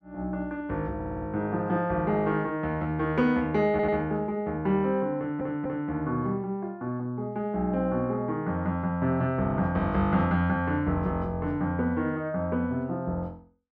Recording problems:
stutter; at 1 s, at 3.5 s and at 5 s

